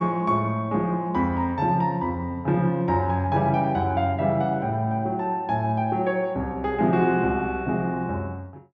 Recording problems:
none

